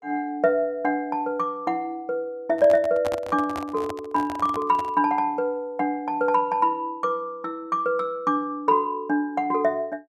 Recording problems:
handling noise; from 2.5 to 5 s; peak -3 dB vs average level

